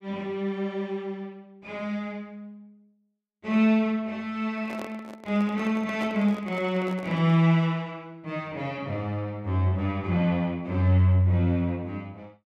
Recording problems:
microphone handling noise; from 4.5 to 7.5 s; peak -6 dB vs average level

